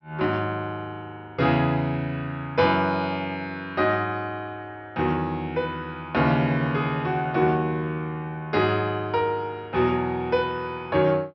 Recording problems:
low-pass filter; nothing above 5.8 kHz

